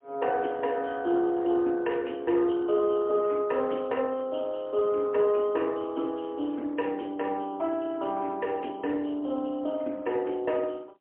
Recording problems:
phone line; 260 Hz to 3.2 kHz, AMR-NB, then MP3

